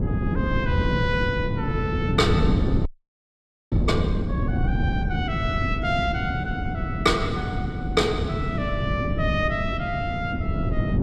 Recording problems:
wind noise; below 210 Hz, SNR -1 dB
frozen audio; at 3 s for 1 s

